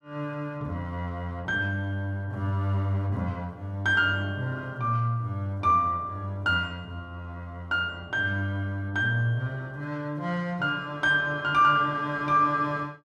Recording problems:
none

